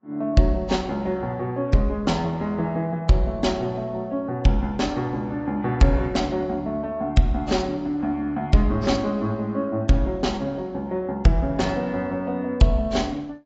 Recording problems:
lossy codec; AAC, log-spectral distance 2 dB, nothing above 7.3 kHz

